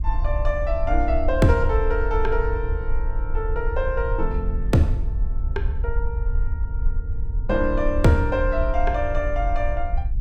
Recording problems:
low-frequency rumble; below 58 Hz, SNR 2 dB

